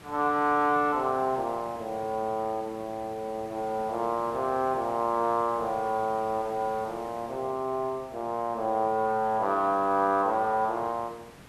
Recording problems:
background hiss; slope -4 dB per octave, SNR 20 dB

